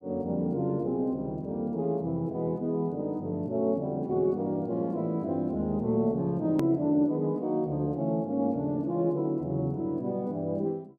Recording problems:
edit click; at 6.5 s

